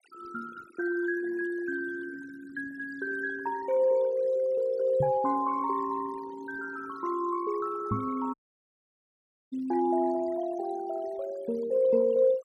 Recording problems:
denoising artefacts; signal-to-artefact ratio 20 dB
knock on the microphone; at 5 s and at 8 s; peak +2 dB vs average level
dropout; at 8.5 s for 1 s

